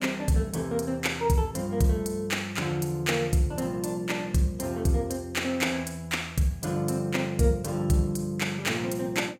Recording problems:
none

